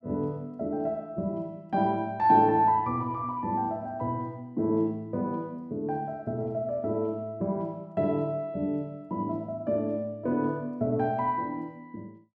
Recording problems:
none

